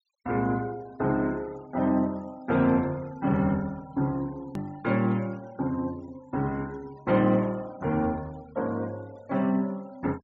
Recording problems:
treble cut off; nothing above 8 kHz
denoising artefacts; signal-to-artefact ratio 26 dB
edit click; at 4.5 s

